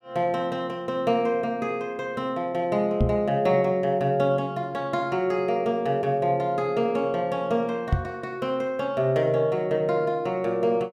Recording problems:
microphone thump; at 3 s and at 8 s; peak +6 dB vs average level

